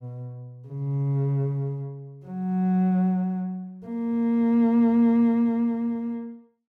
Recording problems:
none

